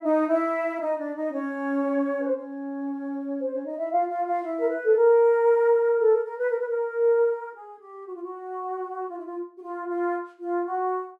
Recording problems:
none

